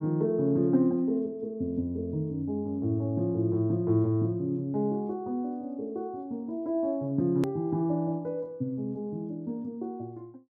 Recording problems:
edit click; at 7.5 s

